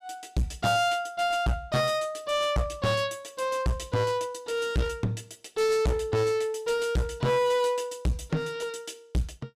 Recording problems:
distorted audio; hard clipping, uneven, signal-to-distortion ratio 5 dB

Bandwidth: 14.5 kHz